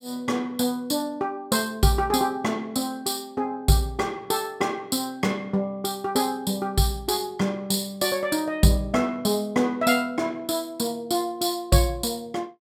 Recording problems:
none

